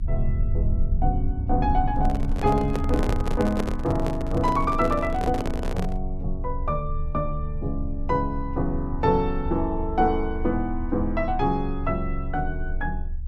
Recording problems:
low-frequency rumble; below 68 Hz, strongest tone 24 Hz, SNR 5 dB
handling noise; from 2 to 6 s; peak +3 dB vs average level

